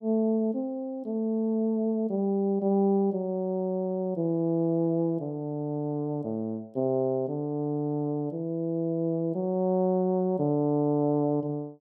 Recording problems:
none

